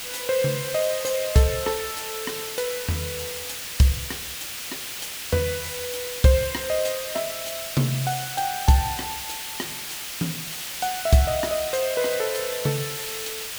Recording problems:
background hiss; slope +2 dB per octave, SNR 5 dB

